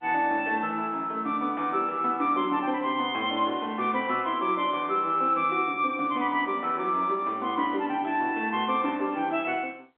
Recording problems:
phone line; 240 Hz to 3.5 kHz, G.711

